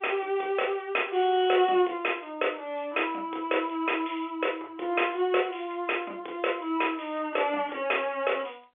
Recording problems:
telephone audio; 300 Hz to 3.5 kHz, G.711

